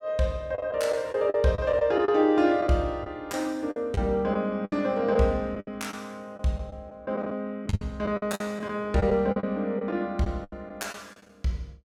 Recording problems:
lost packets; 10% of the sound replaced, filled with the last packet

